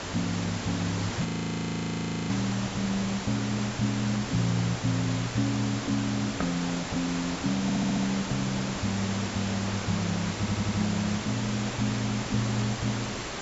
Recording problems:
low-pass filter; nothing above 8 kHz
background hiss; slope -3 dB per octave, SNR 4 dB
frozen audio; at 1.5 s for 1 s
stutter; at 7.5 s and at 10 s

